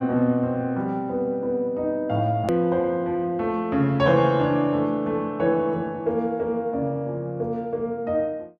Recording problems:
hard cut with a click; at 2.5 s

